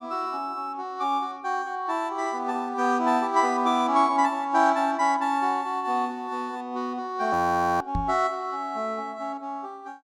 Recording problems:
frozen audio; at 7.5 s
knock on the microphone; at 8 s; peak -1 dB vs average level

